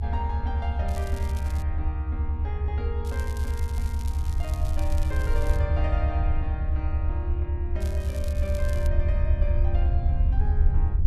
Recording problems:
low-frequency rumble; below 78 Hz, SNR -10 dB
crackle; at 1 s, from 3 to 5.5 s and from 8 to 9 s; loose cable, SNR 11 dB

